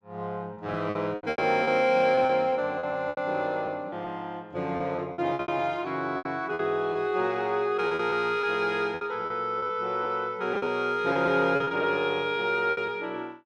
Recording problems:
lost packets; 11% of the sound replaced, filled with repeated pitch periods

